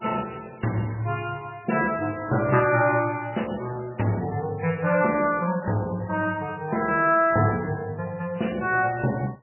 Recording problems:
lossy codec; MP3, log-spectral distance 5 dB, nothing above 2.4 kHz

